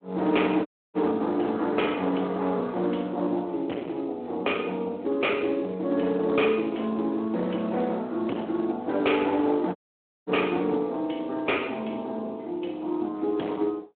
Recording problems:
phone line; 240 Hz to 3.3 kHz, Speex
distortion; hard clipping, uneven, signal-to-distortion ratio 10 dB
dropout; at 0.5 s and at 10 s for 0.5 s

